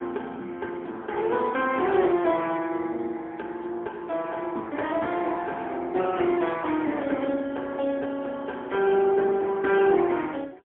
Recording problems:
telephone audio; 220 Hz to 3.4 kHz, AMR-NB, then MP3

